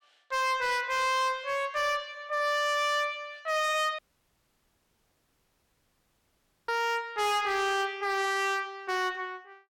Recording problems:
distorted audio; hard clipping, signal-to-distortion ratio 8 dB
dropout; at 4 s for 2.5 s

